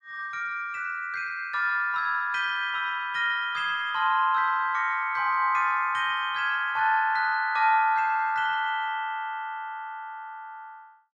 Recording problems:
none

